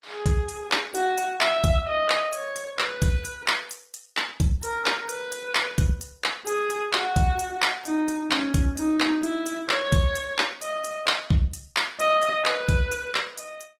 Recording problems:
codec artefacts; Opus, log-spectral distance 4 dB

